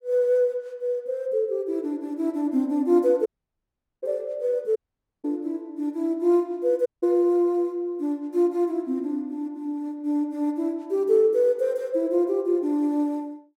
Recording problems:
audio cutting out; at 3.5 s for 1 s, at 5 s and at 7 s

